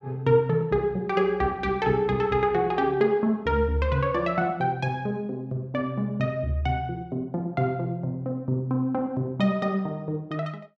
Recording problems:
none

